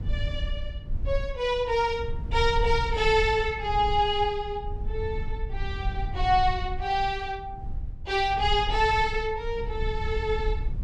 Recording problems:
low-frequency rumble; below 70 Hz, SNR 8 dB

